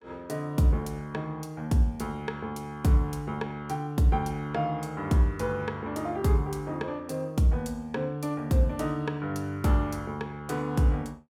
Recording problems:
none

